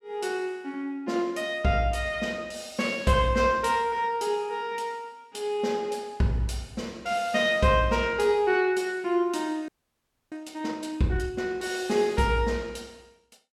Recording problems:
frozen audio; at 9.5 s for 0.5 s

